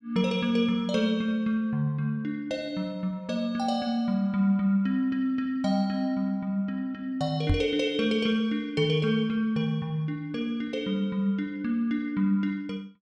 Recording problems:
knock on the microphone; at 7.5 s; peak +5 dB vs average level

